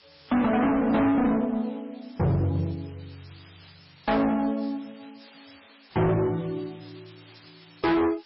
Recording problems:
lossy compression; MP3, log-spectral distance 13 dB, nothing above 5.3 kHz
distorted audio; hard clipping, uneven, signal-to-distortion ratio 7 dB
background hiss; SNR 25 dB

